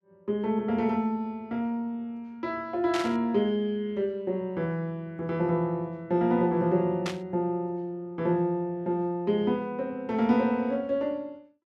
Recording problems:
burst of static; at 3 s and at 7 s; peak -2 dB vs average level

